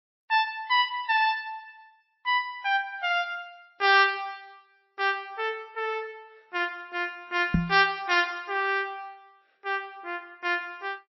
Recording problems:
lossy codec; MP3, log-spectral distance 2 dB, nothing above 5.7 kHz
microphone bump; at 7.5 s; peak +6 dB vs average level

